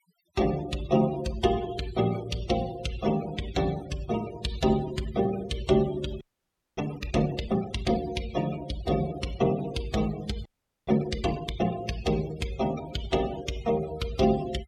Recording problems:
noise reduction artefacts; signal-to-artefact ratio 15 dB
audio freezing; at 6 s for 0.5 s and at 10 s

